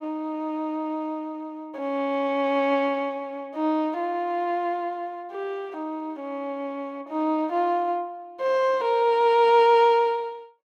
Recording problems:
none

